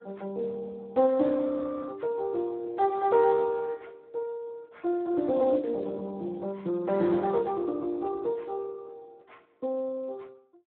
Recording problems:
phone line; 220 Hz to 2.4 kHz, Speex

